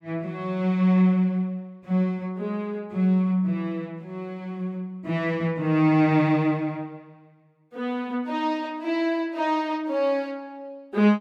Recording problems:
none

